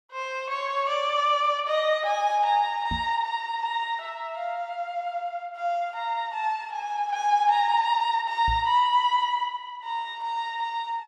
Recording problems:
knock on the microphone; at 3 s and at 8.5 s; peak -2 dB vs average level

